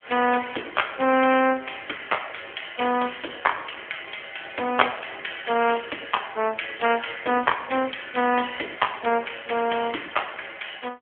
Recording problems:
telephone audio; 190 Hz to 3.3 kHz, AMR-NB

